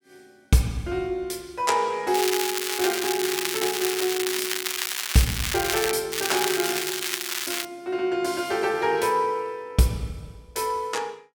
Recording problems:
crackle; from 2 to 6 s and from 6 to 7.5 s; loose cable, SNR 1 dB

